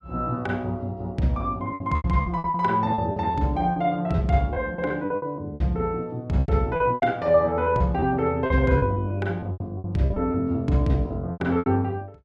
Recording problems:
packet loss; 13% of the sound replaced, filled with repeated pitch periods

